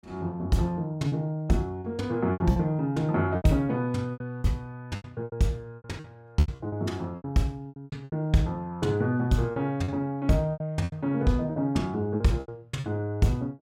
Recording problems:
packet loss; 12% of the sound replaced, filled with repeated pitch periods

